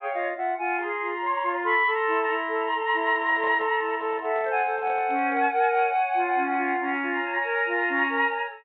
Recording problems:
treble cut off; nothing above 4 kHz
handling noise; from 3 to 5.5 s; peak -13 dB vs average level

